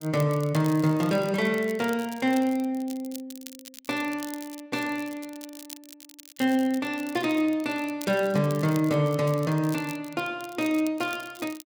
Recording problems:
crackling; vinyl, SNR 18 dB

